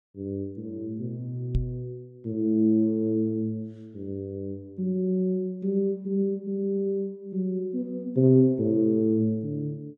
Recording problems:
microphone thump; at 1.5 s; peak +3 dB vs average level

